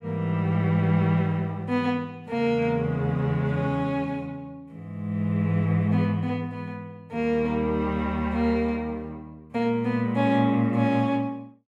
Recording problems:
none

